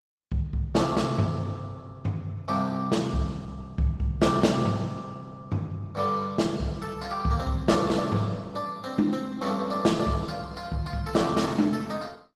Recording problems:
lossy codec; Opus, log-spectral distance 3 dB, nothing above 15.5 kHz

